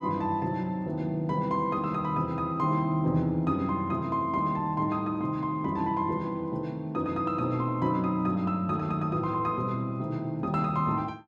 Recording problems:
none

